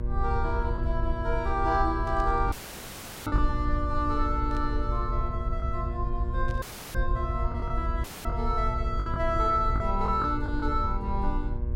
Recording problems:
hum; 60 Hz, harmonics up to 1.2 kHz, SNR 10 dB
low-frequency rumble; below 66 Hz, SNR 2 dB
packet loss; 4% of the sound replaced, filled with the last packet
burst of static; at 2 s, at 4.5 s and at 6.5 s; peak -14 dB vs average level
dropout; at 2.5 s for 0.5 s, at 6.5 s and at 8 s; filled with static

